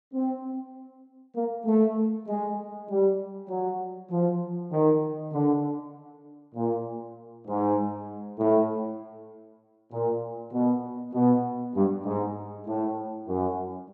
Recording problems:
none

